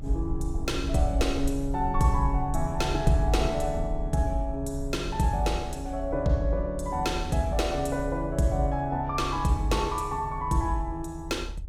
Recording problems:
low-frequency rumble; below 70 Hz, SNR 9 dB

